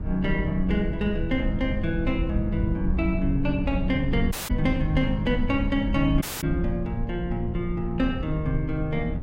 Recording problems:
wind on the microphone; below 100 Hz, SNR 4 dB
dropout; at 4.5 s and at 6 s

